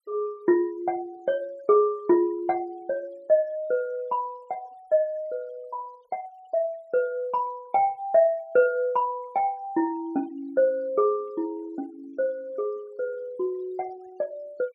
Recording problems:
denoising artefacts; signal-to-artefact ratio 28 dB

